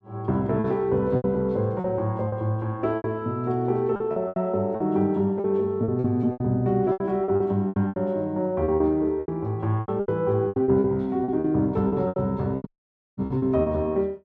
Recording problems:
lost packets; 14% of the sound replaced, filled with repeated pitch periods
dropout; at 13 s for 0.5 s

